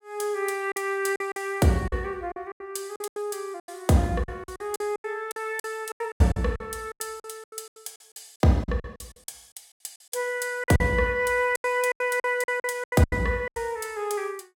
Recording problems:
lost packets; 16% of the sound replaced, filled with silence

